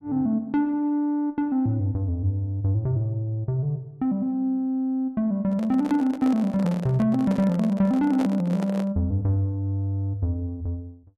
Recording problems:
handling noise; from 5.5 to 9 s; peak -4 dB vs average level

